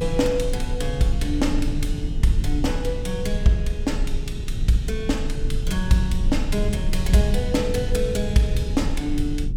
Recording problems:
rumble; below 74 Hz, strongest tone 22 Hz, SNR 4 dB

